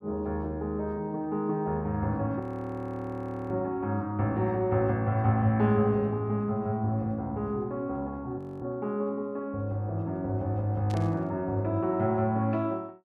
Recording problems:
frozen audio; at 2.5 s for 1 s and at 8.5 s
static burst; at 11 s; peak -12 dB vs average level

